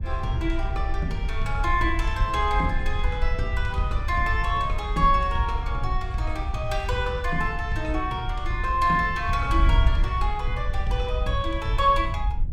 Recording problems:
wind noise; below 64 Hz, SNR 3 dB

